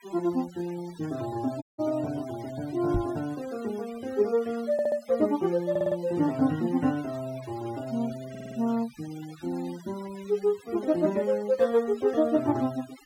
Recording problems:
denoising artefacts; signal-to-artefact ratio 20 dB
dropout; at 1.5 s
knock on the microphone; at 3 s; peak +2 dB vs average level
audio stuttering; at 4.5 s, at 5.5 s and at 8.5 s

